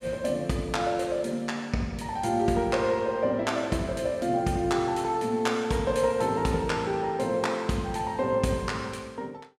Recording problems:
none

